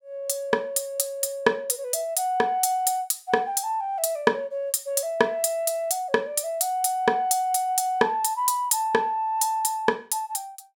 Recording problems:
none

